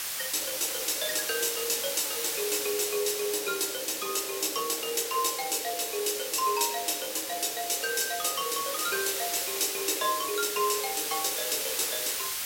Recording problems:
background hiss; slope +2 dB per octave, SNR 2 dB

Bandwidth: 16.5 kHz